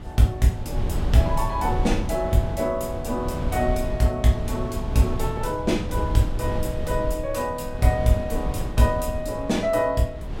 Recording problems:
wind noise; below 130 Hz, SNR 6 dB

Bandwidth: 16 kHz